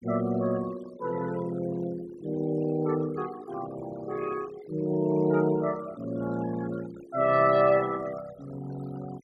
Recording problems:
denoising artefacts; signal-to-artefact ratio 18 dB

